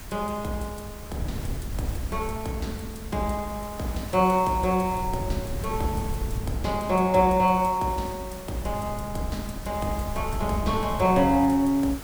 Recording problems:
background hiss; slope -3 dB per octave, SNR 16 dB
wind noise; below 120 Hz, SNR 11 dB

